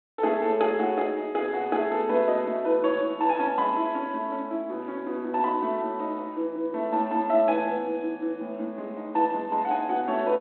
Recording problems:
phone line; 220 Hz to 3.4 kHz, G.726

